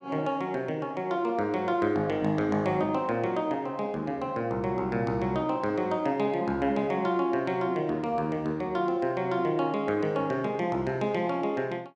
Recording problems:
none

